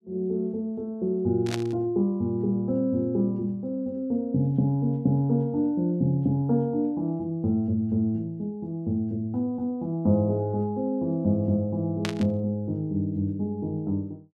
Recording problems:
burst of static; at 1.5 s and at 12 s; peak -1 dB vs average level

